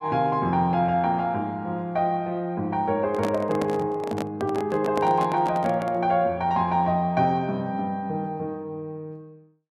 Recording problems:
handling noise; from 3 to 6 s; peak 0 dB vs average level

